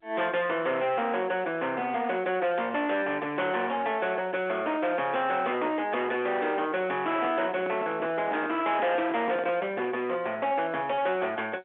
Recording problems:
telephone audio; 320 Hz to 3.4 kHz, G.711
distorted audio; hard clipping, uneven, signal-to-distortion ratio 9 dB
microphone handling noise; from 7 to 10 s; peak -3 dB vs average level

